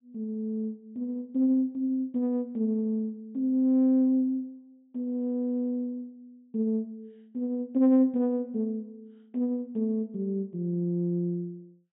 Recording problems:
low-pass filter; nothing above 4 kHz

